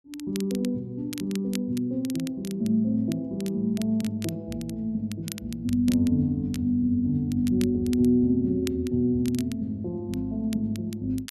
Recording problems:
crackle; vinyl, SNR 17 dB

